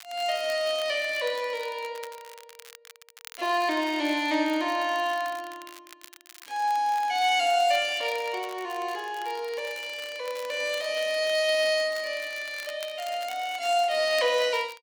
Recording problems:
crackling; vinyl, SNR 20 dB

